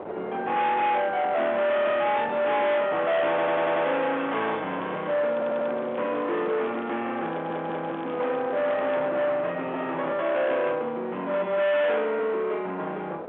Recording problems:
telephone audio; 370 Hz to 3.6 kHz, G.711
distorted audio; soft clipping, signal-to-distortion ratio 8 dB
wind on the microphone; below 1.1 kHz, SNR 15 dB
audio stuttering; at 3.5 s, at 5.5 s and at 7.5 s
crackle; from 4 to 7 s and from 7 to 9 s; loose cable, SNR 25 dB

